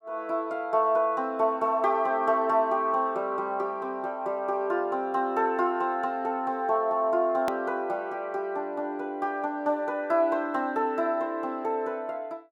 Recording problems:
hard cut with a click; at 7.5 s

